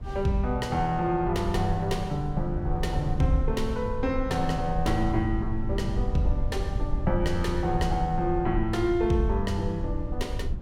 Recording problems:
low-frequency rumble; below 82 Hz, SNR 5 dB

